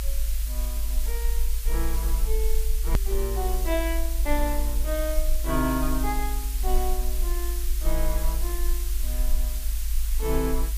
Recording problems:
background hiss; slope +4 dB per octave, SNR 5 dB
low-frequency rumble; below 52 Hz, SNR -3 dB
hard cut with a click; at 3 s

